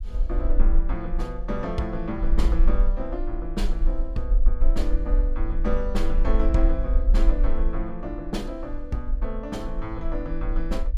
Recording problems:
low-frequency rumble; below 40 Hz, strongest tone 20 Hz, SNR -4 dB

